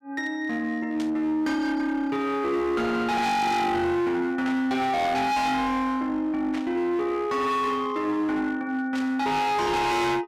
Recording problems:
distortion; hard clipping, uneven, signal-to-distortion ratio 6 dB
static burst; 4 times, first at 1 s; peak -9 dB vs average level

